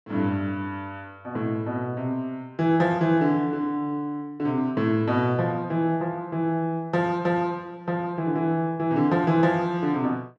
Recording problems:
none

